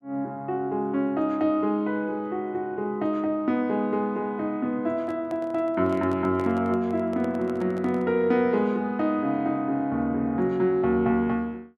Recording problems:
microphone handling noise; from 5 to 8 s; peak -10 dB vs average level

